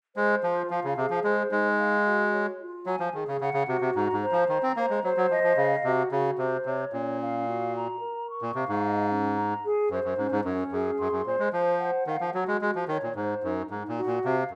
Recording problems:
none

